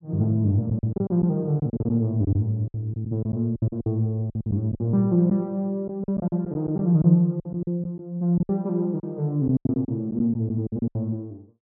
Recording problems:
packet loss; 13% of the sound replaced, filled with silence

